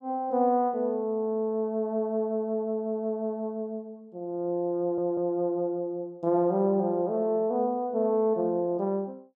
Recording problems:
audio stuttering; at 5 s

